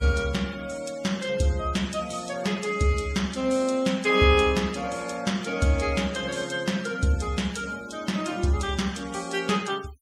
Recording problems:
denoising artefacts; signal-to-artefact ratio 19 dB

